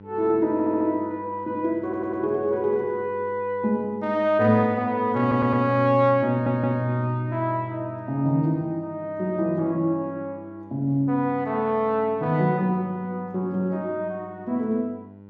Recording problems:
electrical hum; 50 Hz, harmonics up to 1 kHz, SNR 21 dB
stutter; 4 times, first at 0.5 s

